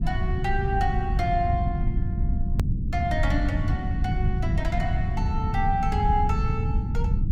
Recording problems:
low-frequency rumble; below 120 Hz, SNR -3 dB
click at an edit; at 2.5 s

